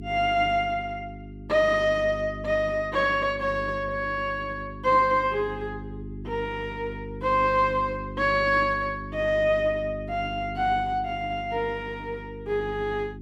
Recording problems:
hum; 50 Hz, harmonics up to 400 Hz, SNR 13 dB

